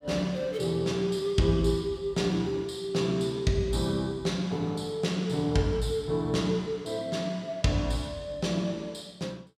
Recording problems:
none

